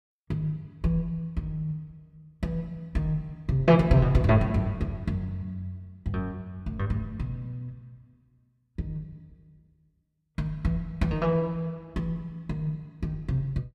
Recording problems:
none

